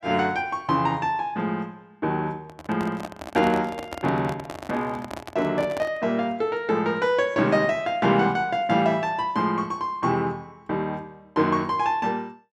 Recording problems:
handling noise; from 2.5 to 6 s; peak -5 dB vs average level

